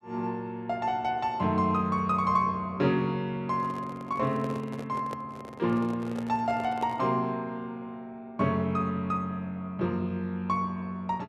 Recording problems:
microphone handling noise; from 3.5 to 7 s; peak -5 dB vs average level

